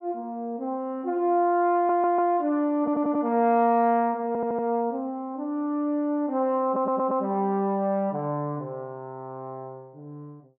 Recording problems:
audio stuttering; 4 times, first at 2 s

